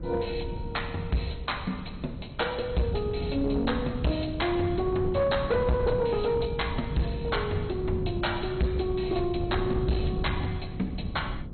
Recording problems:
lossy compression; MP2, log-spectral distance 5 dB, nothing above 4.2 kHz
distortion; hard clipping, signal-to-distortion ratio 10 dB
hum; 60 Hz, harmonics up to 540 Hz, SNR 20 dB
wind on the microphone; below 190 Hz, SNR 6 dB

